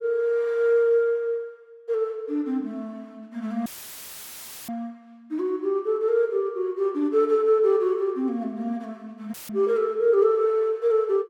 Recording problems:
audio cutting out; at 3.5 s for 1 s and at 9.5 s; filled with static

